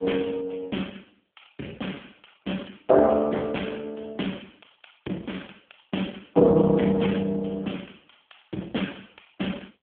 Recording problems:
phone line; 190 Hz to 3.4 kHz, AMR-NB

